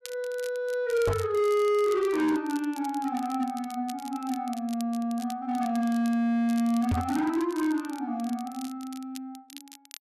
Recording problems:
distortion; hard clipping, signal-to-distortion ratio 11 dB
crackling; vinyl, SNR 19 dB
microphone thump; at 1 s and at 7 s; peak +4 dB vs average level

